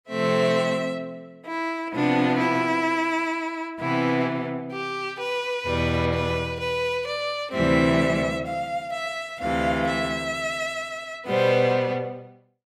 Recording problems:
none

